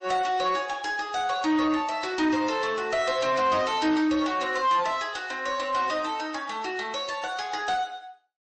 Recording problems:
codec artefacts; MP3, log-spectral distance 3 dB, nothing above 8.2 kHz
distorted audio; soft clipping, signal-to-distortion ratio 11 dB

